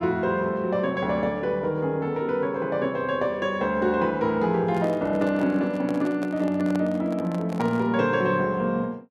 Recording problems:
handling noise; from 4.5 to 8 s; peak -6 dB vs average level

